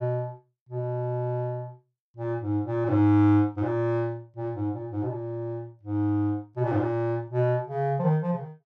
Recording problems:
none

